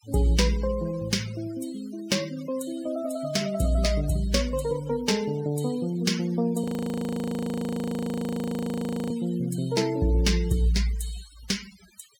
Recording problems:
denoising artefacts; signal-to-artefact ratio 16 dB
frozen audio; at 6.5 s for 2.5 s

